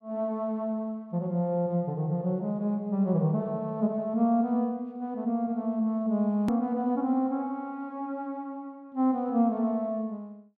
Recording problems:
edit click; at 6.5 s

